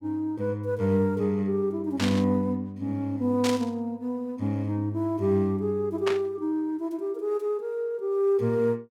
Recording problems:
burst of static; at 2 s, at 3.5 s and at 6 s; peak 0 dB vs average level

